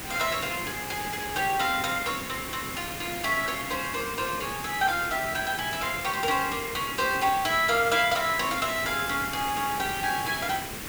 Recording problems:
background hiss; SNR 7 dB

